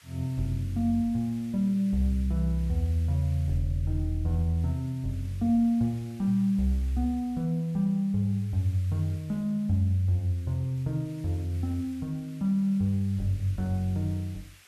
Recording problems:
background hiss; SNR 26 dB

